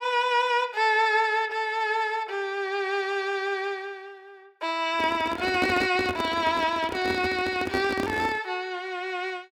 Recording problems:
handling noise; from 5 to 8.5 s; peak +2 dB vs average level

